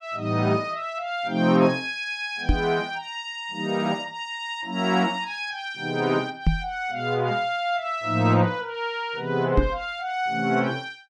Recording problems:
microphone thump; at 2.5 s, at 6.5 s and at 9.5 s; peak +7 dB vs average level

